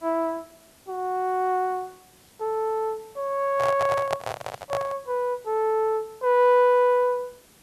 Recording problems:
background hiss; slope -3 dB per octave, SNR 29 dB
handling noise; from 3.5 to 5 s; peak +1 dB vs average level

